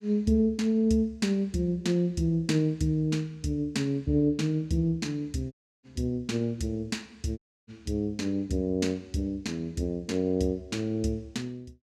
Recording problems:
dropout; at 5.5 s and at 7.5 s

